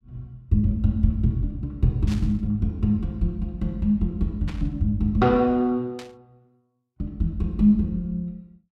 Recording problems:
static burst; at 2 s, at 4.5 s and at 6 s; peak -11 dB vs average level

